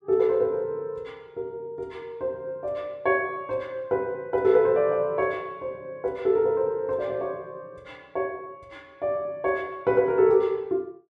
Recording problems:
none

